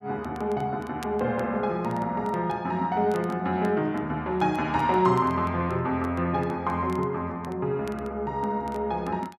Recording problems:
crackling; vinyl, SNR 27 dB

